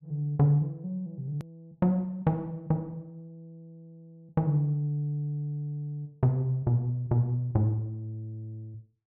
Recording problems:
treble missing; nothing above 4.3 kHz
click at an edit; at 1.5 s

